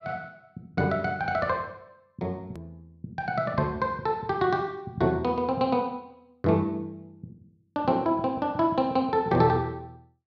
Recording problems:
hard cut with a click; at 2.5 s

